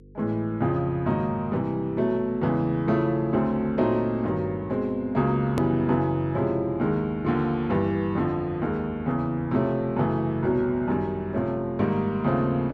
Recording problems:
hum; 50 Hz, harmonics up to 500 Hz, SNR 23 dB
click at an edit; at 5.5 s

